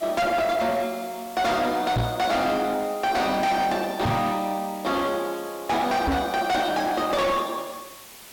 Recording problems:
distorted audio; hard clipping, uneven, signal-to-distortion ratio 7 dB
hiss; slope -1 dB per octave, SNR 19 dB
microphone bump; at 2 s, at 4 s and at 6 s; peak +3 dB vs average level

